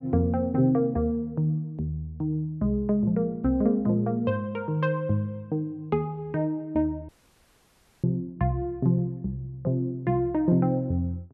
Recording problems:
audio cutting out; at 7 s for 1 s

